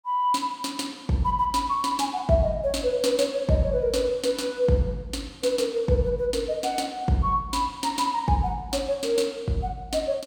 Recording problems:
none

